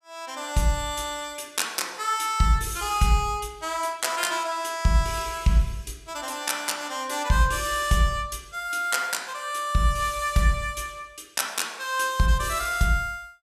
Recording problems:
none

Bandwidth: 14.5 kHz